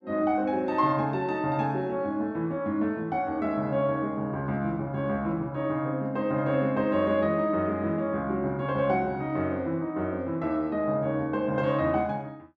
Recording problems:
none

